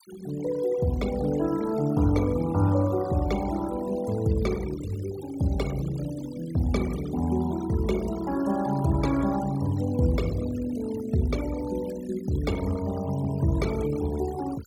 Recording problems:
denoising artefacts; signal-to-artefact ratio 17 dB

